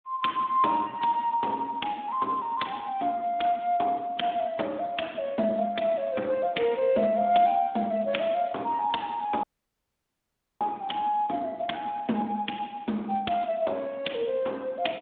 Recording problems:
phone line; 170 Hz to 3.6 kHz, Speex
dropout; at 9.5 s for 1 s

